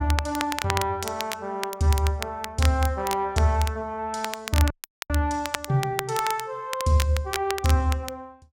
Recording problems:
crackling; vinyl, SNR 8 dB
dropout; at 4.5 s

